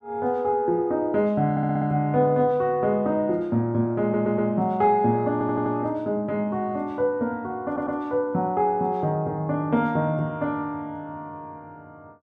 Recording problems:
audio stuttering; 4 times, first at 1.5 s

